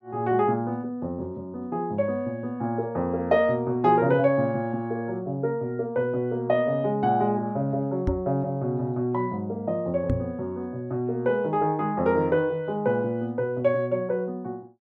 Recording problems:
knock on the microphone; at 8 s and at 10 s; peak +3 dB vs average level

